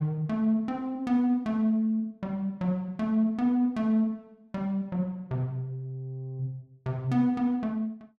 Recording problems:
none

